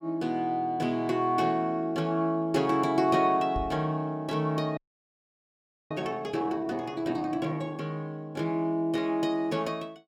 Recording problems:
microphone bump; at 3.5 s; peak -4 dB vs average level
frozen audio; at 5 s for 1 s

